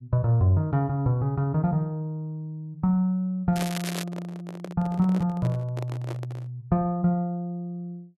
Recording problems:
microphone handling noise; from 3.5 to 6.5 s; peak -7 dB vs average level
crackling; at 3.5 s; loose cable, SNR 10 dB

